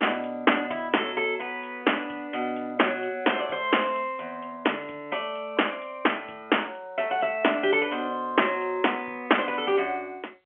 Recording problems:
telephone audio; 340 Hz to 3.2 kHz, G.711

